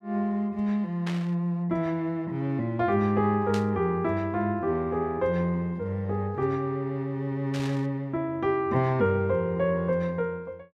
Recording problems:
burst of static; at 1 s, at 3.5 s and at 7.5 s; peak -6 dB vs average level

